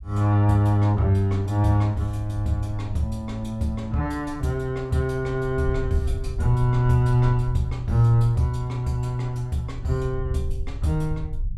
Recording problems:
low-frequency rumble; below 76 Hz, SNR 12 dB

